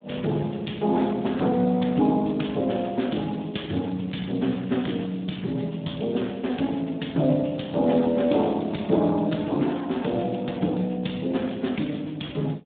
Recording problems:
telephone audio; 110 Hz to 3.7 kHz, Speex

